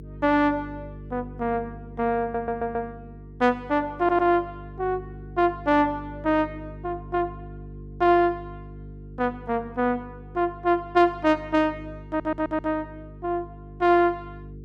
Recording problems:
hum; 50 Hz, harmonics up to 450 Hz, SNR 17 dB
stutter; at 2 s, at 4 s and at 12 s

